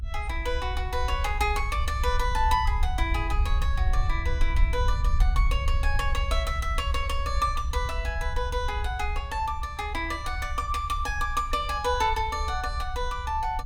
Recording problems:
rumble; below 68 Hz, SNR 1 dB

